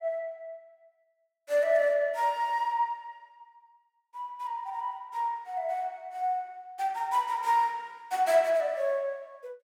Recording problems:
none

